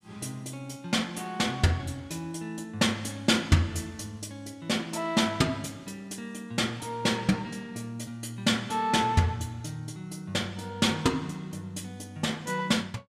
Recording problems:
none

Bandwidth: 15 kHz